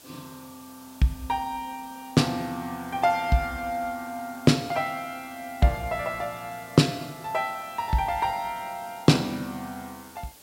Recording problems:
background hiss; SNR 21 dB

